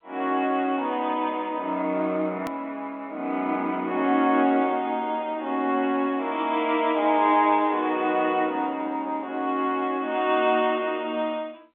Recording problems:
phone line; 240 Hz to 3.7 kHz, G.711
click at an edit; at 2.5 s

